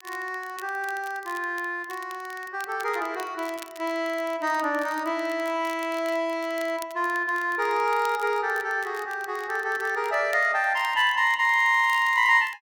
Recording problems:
crackle; vinyl, SNR 22 dB

